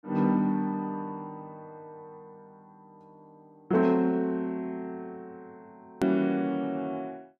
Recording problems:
click at an edit; at 6 s

